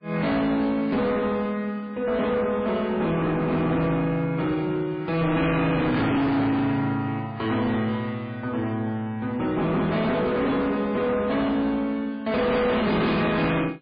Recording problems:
codec artefacts; MP3, log-spectral distance 2 dB, nothing above 4.6 kHz
distortion; soft clipping, signal-to-distortion ratio 6 dB

